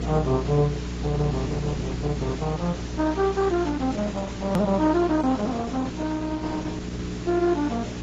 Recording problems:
lossy compression; Opus, then AAC, log-spectral distance 5 dB, nothing above 13.1 kHz
mains hum; 60 Hz, harmonics up to 420 Hz, SNR 6 dB
hiss; slope -2 dB per octave, SNR 15 dB
edit click; at 4.5 s

